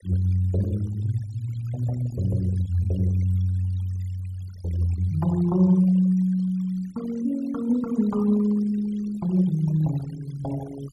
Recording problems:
denoising artefacts; signal-to-artefact ratio 21 dB

